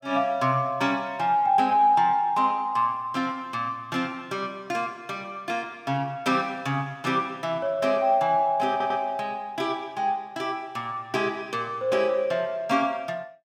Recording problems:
audio stuttering; at 8.5 s

